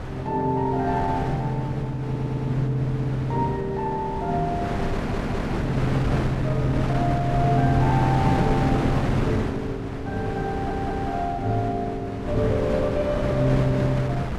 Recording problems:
wind on the microphone; below 560 Hz, SNR 4 dB
audio stuttering; at 2 s, at 5 s and at 11 s

